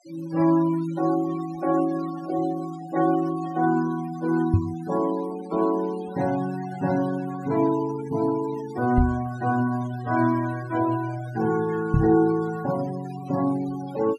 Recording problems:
denoising artefacts; signal-to-artefact ratio 17 dB
knock on the microphone; at 4.5 s, at 9 s and at 12 s; peak +8 dB vs average level

